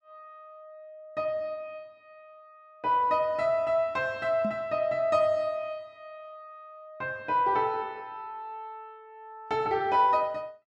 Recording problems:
knock on the microphone; at 4.5 s; peak -2 dB vs average level

